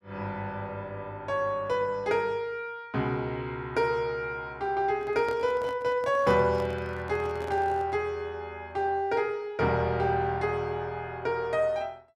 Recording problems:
microphone handling noise; from 5 to 8 s; peak -8 dB vs average level

